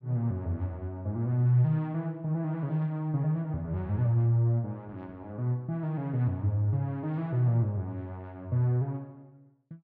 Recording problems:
none

